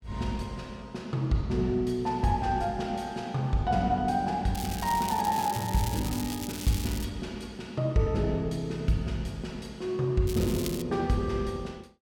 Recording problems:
crackle; from 4.5 to 7 s and at 10 s; loose cable, SNR 10 dB

